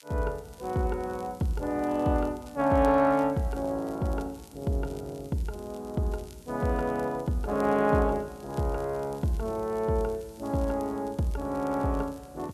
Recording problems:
background hiss; slope +3 dB per octave, SNR 28 dB
crackle; vinyl, SNR 27 dB

